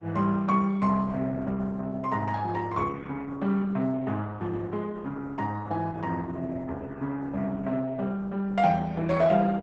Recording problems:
codec artefacts; Opus, log-spectral distance 3 dB, nothing above 8 kHz

